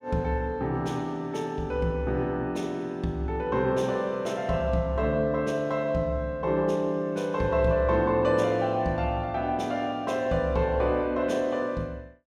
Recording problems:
none

